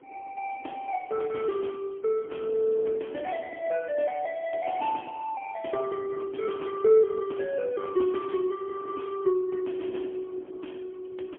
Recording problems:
telephone audio; 280 Hz to 3.3 kHz, AMR-NB, then MP3
wind noise; below 500 Hz, SNR 20 dB

